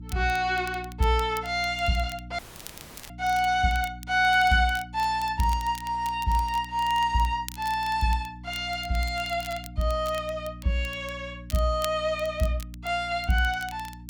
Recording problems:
electrical hum; 60 Hz, harmonics up to 300 Hz, SNR 17 dB
crackling; vinyl, SNR 19 dB
dropout; at 2.5 s for 0.5 s

